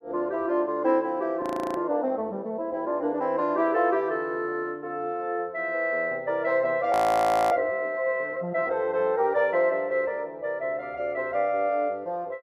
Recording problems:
audio freezing; at 1.5 s and at 7 s for 0.5 s

